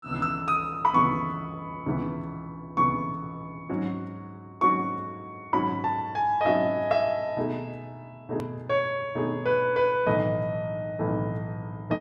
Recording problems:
edit click; at 8.5 s

